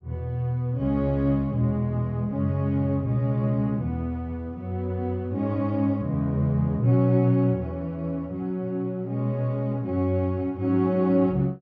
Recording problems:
treble missing; nothing above 6.5 kHz

